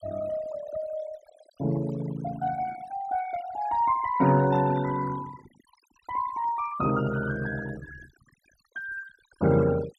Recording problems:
noise reduction artefacts; signal-to-artefact ratio 16 dB

